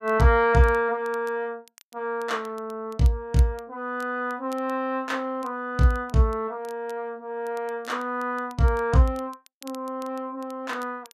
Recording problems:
crackle; vinyl, SNR 27 dB

